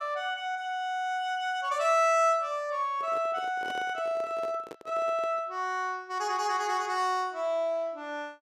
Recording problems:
handling noise; from 3 to 5.5 s; peak -9 dB vs average level

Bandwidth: 14.5 kHz